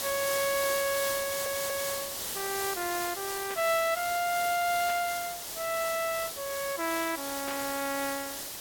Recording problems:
lossy compression; Opus, then G.722, log-spectral distance 2 dB
hiss; SNR 3 dB
audio stuttering; at 1 s
burst of static; at 3.5 s, at 5 s and at 7.5 s; peak -6 dB vs average level

